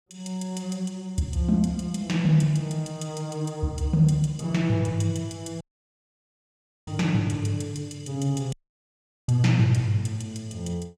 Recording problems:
dropout; at 5.5 s for 1.5 s and at 8.5 s for 1 s

